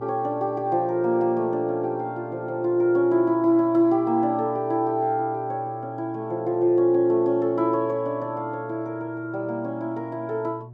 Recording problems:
mains hum; 60 Hz, harmonics up to 720 Hz, SNR 18 dB

